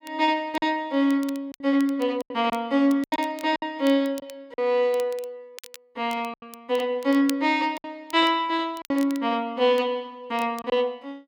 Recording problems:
crackle; vinyl, SNR 22 dB
lost packets; 7% of the sound replaced, filled with silence

